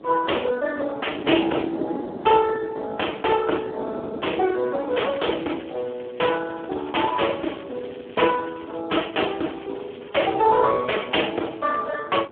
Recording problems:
phone line; 260 Hz to 3.3 kHz, Speex
wind on the microphone; below 510 Hz, SNR 14 dB
crackle; from 5 to 9 s and from 9 to 12 s; loose cable, SNR 26 dB

